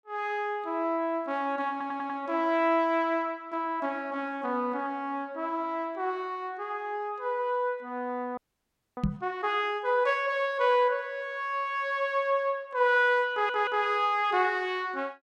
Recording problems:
stutter; at 1.5 s and at 13 s
frozen audio; at 8.5 s for 0.5 s
knock on the microphone; at 9 s; peak +4 dB vs average level

